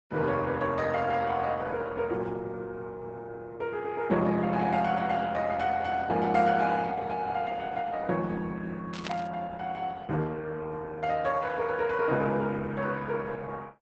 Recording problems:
lossy compression; Opus, log-spectral distance 3 dB, nothing above 8 kHz
static burst; at 9 s; peak -3 dB vs average level

